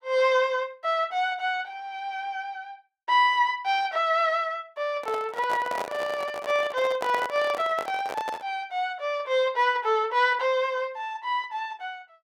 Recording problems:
handling noise; from 5 to 8.5 s; peak -2 dB vs average level

